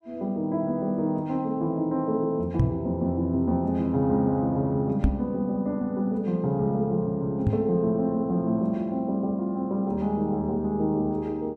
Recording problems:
microphone bump; at 2.5 s, at 5 s and at 7.5 s; peak +7 dB vs average level

